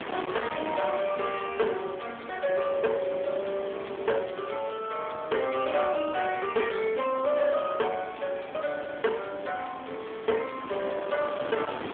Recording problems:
phone line; 260 Hz to 2.9 kHz, AMR-NB
distorted audio; hard clipping, uneven, signal-to-distortion ratio 7 dB
wind on the microphone; below 1.7 kHz, SNR 11 dB

